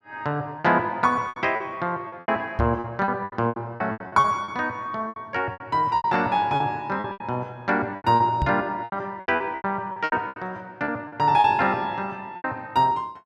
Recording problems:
packet loss; 15% of the sound replaced, filled with repeated pitch periods
microphone thump; at 2.5 s and at 8.5 s; peak +2 dB vs average level

